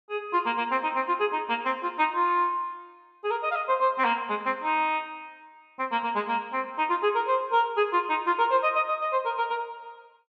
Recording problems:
none

